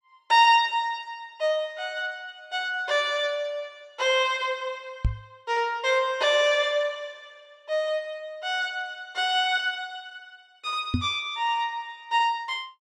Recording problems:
microphone bump; at 5 s and at 11 s; peak +4 dB vs average level

